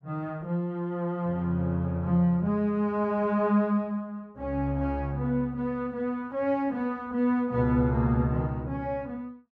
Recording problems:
none

